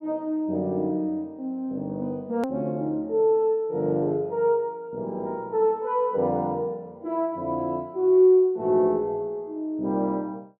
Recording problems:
click at an edit; at 2.5 s

